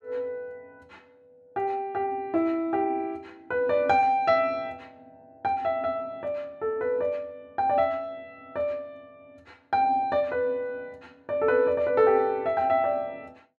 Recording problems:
none

